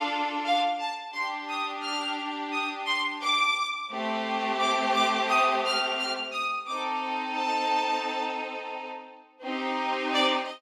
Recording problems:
none

